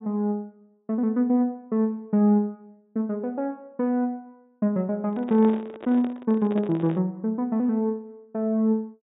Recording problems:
treble missing; nothing above 4 kHz
handling noise; from 5 to 7 s; peak -7 dB vs average level

